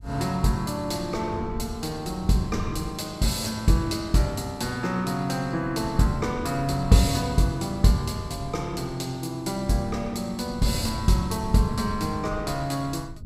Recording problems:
wind noise; below 120 Hz, SNR 13 dB

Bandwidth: 15.5 kHz